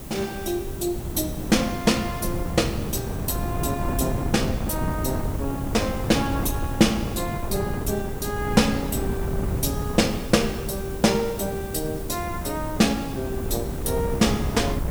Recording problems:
background hiss; slope 0 dB per octave, SNR 16 dB
wind on the microphone; below 250 Hz, SNR 5 dB

